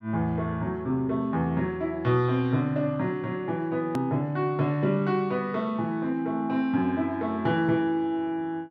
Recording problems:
click at an edit; at 4 s

